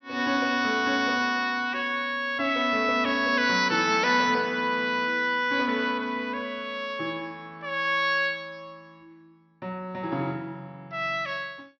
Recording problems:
low-pass filter; nothing above 6 kHz

